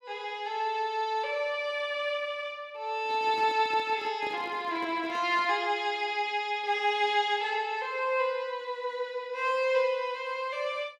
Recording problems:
microphone handling noise; from 3 to 5.5 s; peak -10 dB vs average level

